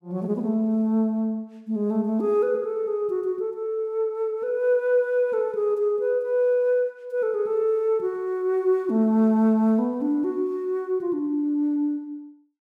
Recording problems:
none

